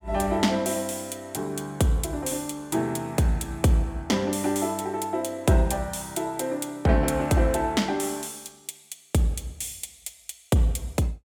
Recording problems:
none

